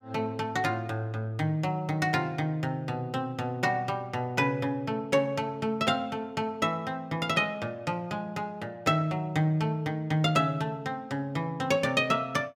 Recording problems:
none

